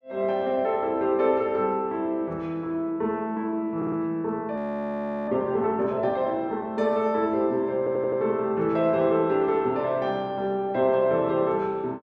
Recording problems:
audio stuttering; at 4 s and at 8 s
frozen audio; at 4.5 s for 0.5 s

